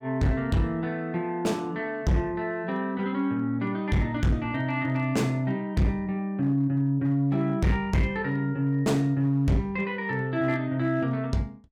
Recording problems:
distorted audio; hard clipping, signal-to-distortion ratio 10 dB

